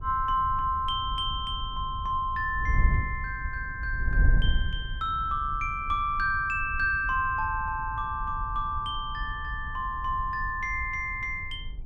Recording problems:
wind noise; below 76 Hz, SNR 6 dB

